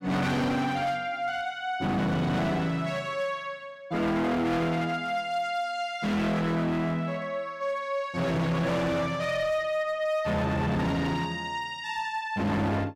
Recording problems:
distortion; hard clipping, uneven, signal-to-distortion ratio 7 dB

